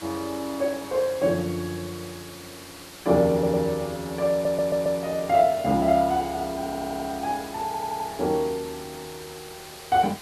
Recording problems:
hiss; slope -1 dB per octave, SNR 16 dB
stutter; 4 times, first at 3.5 s

